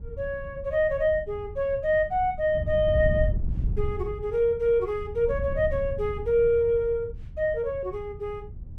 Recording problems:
wind on the microphone; below 100 Hz, SNR 9 dB

